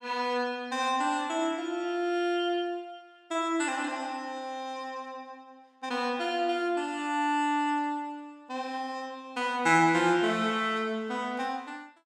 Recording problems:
none

